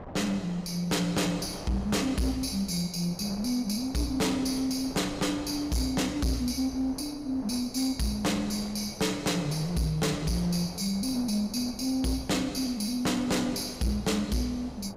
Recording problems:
distortion; hard clipping, signal-to-distortion ratio 8 dB
wind on the microphone; below 750 Hz, SNR 16 dB

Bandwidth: 15.5 kHz